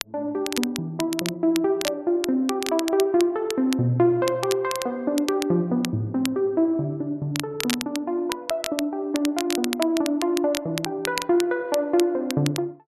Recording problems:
crackling; vinyl, SNR 9 dB

